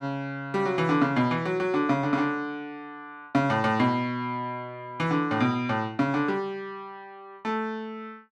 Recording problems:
none

